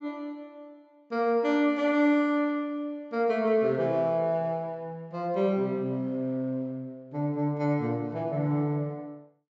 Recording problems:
treble cut off; nothing above 7.6 kHz

